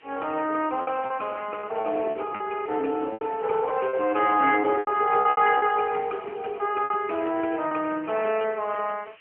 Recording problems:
phone line; 240 Hz to 3.1 kHz, AMR-NB
background hiss; SNR 27 dB
packet loss; 8% of the sound replaced, filled with repeated pitch periods

